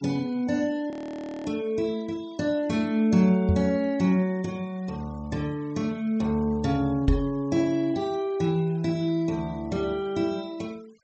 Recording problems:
treble missing; nothing above 8 kHz
denoising artefacts; signal-to-artefact ratio 26 dB
audio freezing; at 1 s for 0.5 s
microphone bump; at 3.5 s and at 7 s; peak +6 dB vs average level

